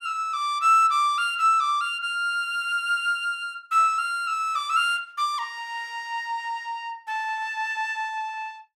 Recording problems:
none

